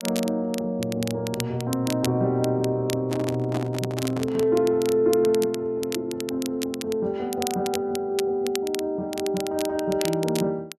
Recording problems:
crackle; vinyl, SNR 12 dB
handling noise; from 3 to 4.5 s; peak -2 dB vs average level

